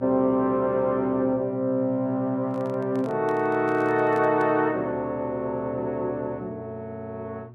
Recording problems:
electrical hum; 60 Hz, harmonics up to 600 Hz, SNR 19 dB
microphone handling noise; from 2.5 to 4.5 s; peak -11 dB vs average level

